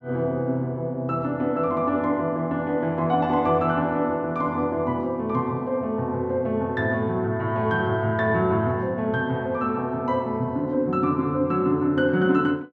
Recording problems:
none

